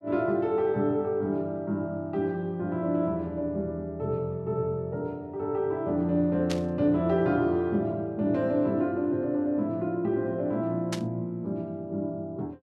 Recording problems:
burst of static; at 6.5 s and at 11 s; peak -2 dB vs average level

